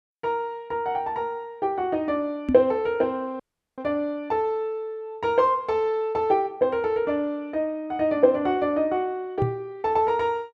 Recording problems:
knock on the microphone; at 2.5 s and at 9.5 s; peak +3 dB vs average level
audio cutting out; at 3.5 s

